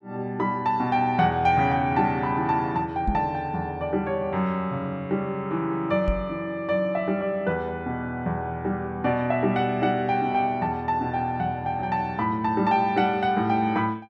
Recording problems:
microphone thump; at 3 s and at 6 s; peak +2 dB vs average level

